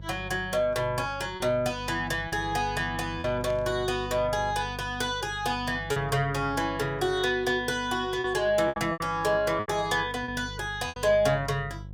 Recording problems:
electrical hum; 50 Hz, harmonics up to 550 Hz, SNR 14 dB
packet loss; 5% of the sound replaced, filled with repeated pitch periods
burst of static; at 3.5 s; peak -15 dB vs average level

